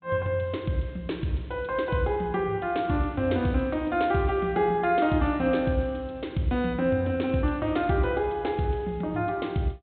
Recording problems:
low-pass filter; nothing above 4 kHz

